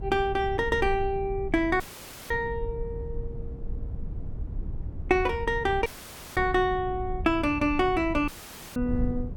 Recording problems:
wind noise; below 96 Hz, SNR 10 dB
audio cutting out; at 2 s, at 6 s for 0.5 s and at 8.5 s; filled with static

